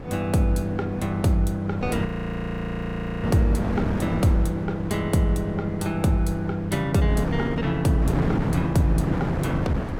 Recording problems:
wind noise; below 480 Hz, SNR 6 dB
frozen audio; at 2 s for 1 s

